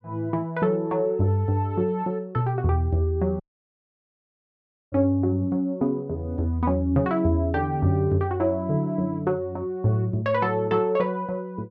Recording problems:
audio cutting out; at 3.5 s for 1.5 s

